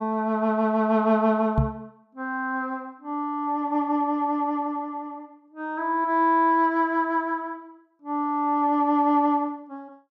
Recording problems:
knock on the microphone; at 1.5 s; peak +5 dB vs average level

